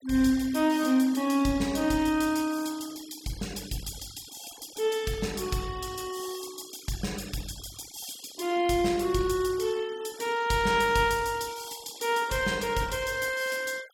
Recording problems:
denoising artefacts; signal-to-artefact ratio 19 dB

